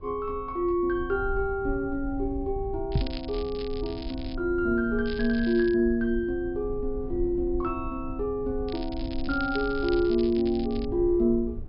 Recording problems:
treble cut off; nothing above 5.5 kHz
rumble; below 66 Hz, SNR 12 dB
crackling; from 3 to 4.5 s, at 5 s and from 8.5 to 11 s; loose cable, SNR 17 dB
microphone bump; at 3 s; peak +6 dB vs average level

